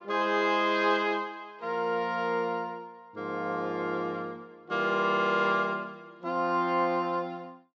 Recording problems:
treble cut off; nothing above 7.8 kHz

